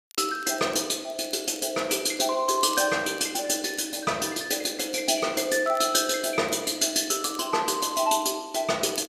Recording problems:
crackling; vinyl, SNR 24 dB

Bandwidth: 14.5 kHz